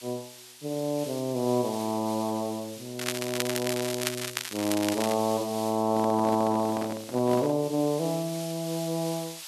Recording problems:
background hiss; SNR 13 dB
crackling; from 3 to 5 s; loose cable, SNR 4 dB
microphone handling noise; from 6 to 7.5 s; peak -4 dB vs average level

